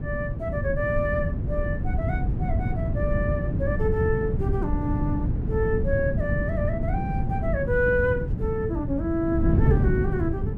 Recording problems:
wind on the microphone; below 170 Hz, SNR -1 dB

